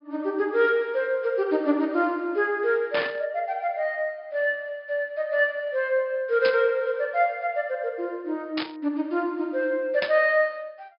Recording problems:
treble cut off; nothing above 5.5 kHz
burst of static; 4 times, first at 3 s; peak -1 dB vs average level

